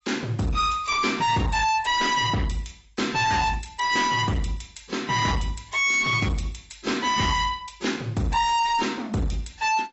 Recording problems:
codec artefacts; AAC, log-spectral distance 5 dB, nothing above 7.6 kHz
distorted audio; hard clipping, uneven, signal-to-distortion ratio 7 dB

